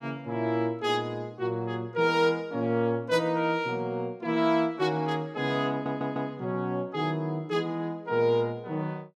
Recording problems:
audio stuttering; at 5.5 s

